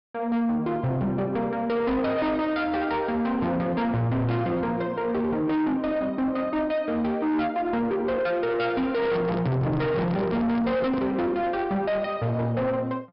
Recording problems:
low-pass filter; nothing above 5.3 kHz
distortion; soft clipping, signal-to-distortion ratio 8 dB
microphone handling noise; from 9 to 11 s; peak -2 dB vs average level

